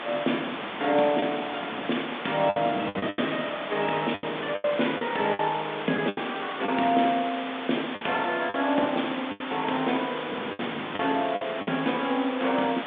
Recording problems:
telephone audio; 190 Hz to 3.6 kHz, G.726
hiss; SNR 7 dB
wind on the microphone; below 440 Hz, SNR 15 dB
packet loss; 8% of the sound replaced, filled with the last packet

